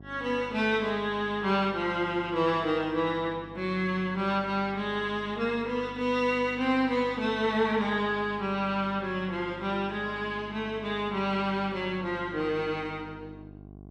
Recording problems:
hum; 50 Hz, harmonics up to 1.1 kHz, SNR 19 dB

